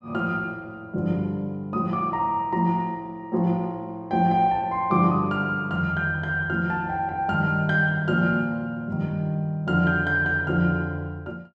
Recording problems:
none

